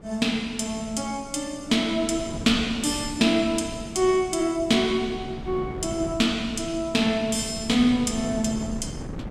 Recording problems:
wind on the microphone; below 300 Hz, SNR 14 dB

